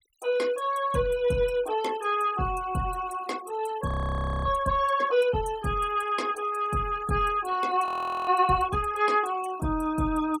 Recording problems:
noise reduction artefacts; signal-to-artefact ratio 20 dB
audio freezing; at 4 s for 0.5 s and at 8 s

